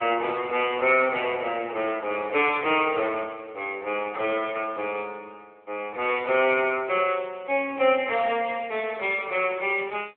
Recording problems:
phone line; 320 Hz to 3.5 kHz, AMR-NB

